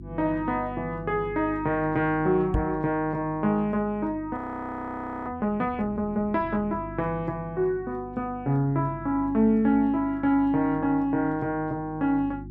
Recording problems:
hum; 50 Hz, harmonics up to 350 Hz, SNR 16 dB
microphone thump; at 2.5 s; peak +3 dB vs average level
audio freezing; at 4.5 s for 1 s

